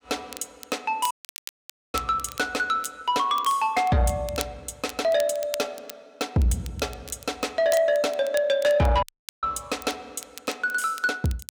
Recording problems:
distorted audio; soft clipping, signal-to-distortion ratio 11 dB
crackle; vinyl, SNR 17 dB
audio cutting out; at 1 s for 1 s and at 9 s

